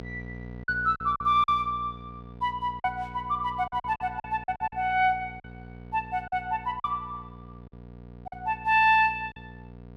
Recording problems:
electrical hum; 60 Hz, harmonics up to 960 Hz, SNR 17 dB
packet loss; 9% of the sound replaced, filled with silence

